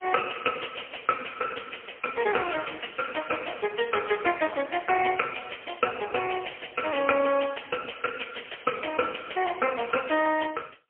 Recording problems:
phone line; 260 Hz to 2.4 kHz, AMR-NB, then MP3

